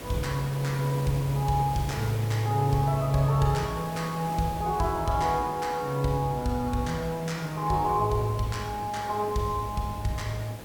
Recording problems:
hiss; slope -5 dB per octave, SNR 13 dB

